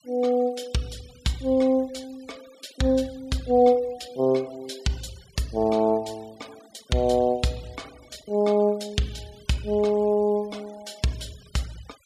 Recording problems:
noise reduction artefacts; signal-to-artefact ratio 25 dB

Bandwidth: 14.5 kHz